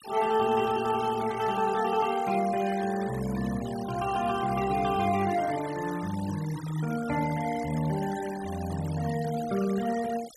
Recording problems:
noise reduction artefacts; signal-to-artefact ratio 16 dB

